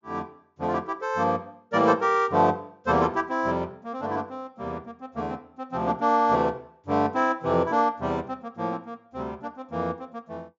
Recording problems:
treble cut off; nothing above 7.3 kHz

